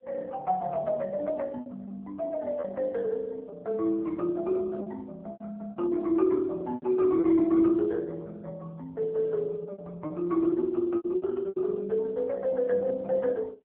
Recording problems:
telephone audio; 220 Hz to 2.1 kHz, AMR-NB
lost packets; 6% of the sound replaced, filled with repeated pitch periods

